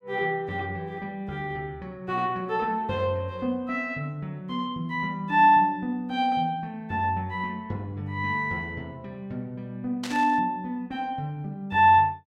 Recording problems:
static burst; at 10 s; peak -5 dB vs average level

